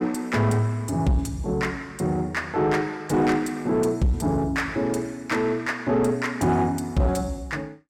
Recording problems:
distortion; soft clipping, signal-to-distortion ratio 11 dB

